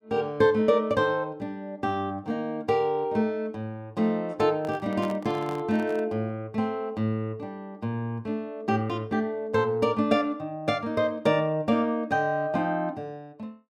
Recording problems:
handling noise; from 4.5 to 6 s; peak -8 dB vs average level

